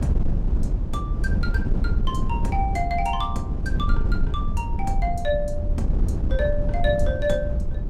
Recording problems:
wind on the microphone; below 82 Hz, SNR -2 dB

